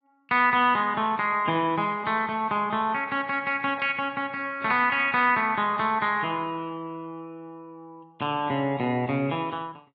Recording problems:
lossy codec; AAC, log-spectral distance 2 dB

